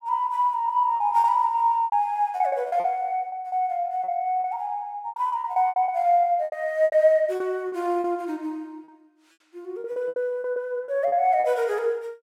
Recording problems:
lost packets; 13% of the sound replaced, filled with repeated pitch periods

